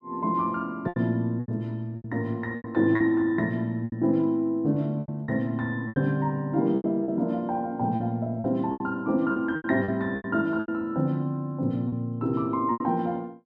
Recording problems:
lost packets; 10% of the sound replaced, filled with repeated pitch periods

